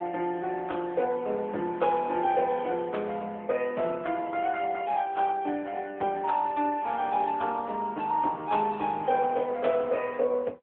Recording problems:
telephone audio; 260 Hz to 3.5 kHz, AMR-NB

